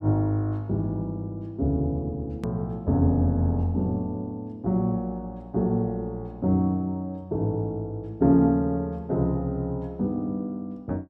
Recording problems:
hard cut with a click; at 2.5 s

